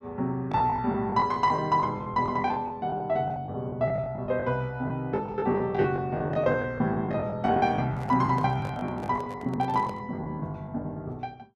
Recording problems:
packet loss; 15% of the sound replaced, filled with the last packet
microphone handling noise; from 8 to 10 s; peak -9 dB vs average level

